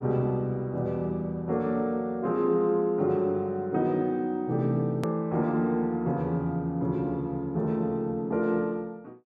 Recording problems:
hard cut with a click; at 5 s

